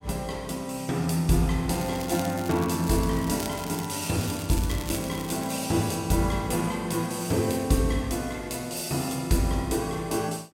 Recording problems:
crackle; from 1.5 to 5.5 s; loose cable, SNR 13 dB

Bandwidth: 16 kHz